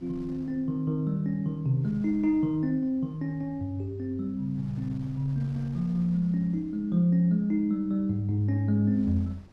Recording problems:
wind on the microphone; below 270 Hz, SNR 25 dB

